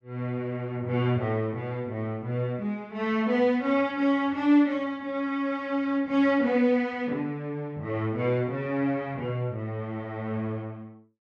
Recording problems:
none

